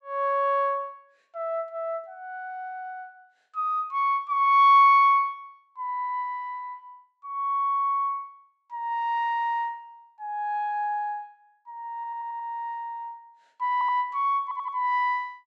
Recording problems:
stutter; at 12 s and at 14 s

